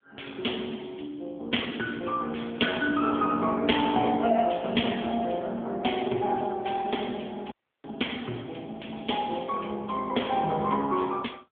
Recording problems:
phone line; 220 Hz to 3.3 kHz, AMR-NB
audio cutting out; at 7.5 s

